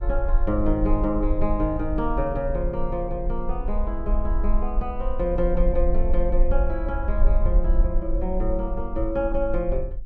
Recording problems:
rumble; below 44 Hz, strongest tone 22 Hz, SNR 1 dB

